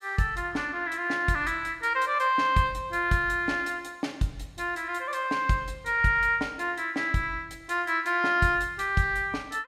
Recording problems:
none

